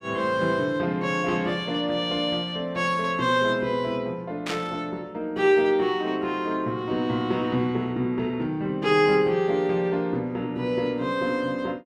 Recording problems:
static burst; at 4.5 s; peak -2 dB vs average level

